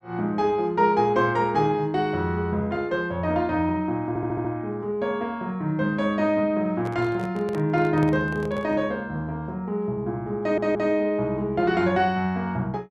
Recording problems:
stutter; at 4 s and at 10 s
microphone handling noise; from 7 to 9 s; peak -7 dB vs average level

